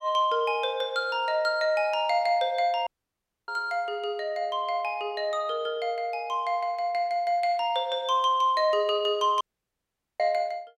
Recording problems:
dropout; at 3 s for 0.5 s and at 9.5 s for 1 s

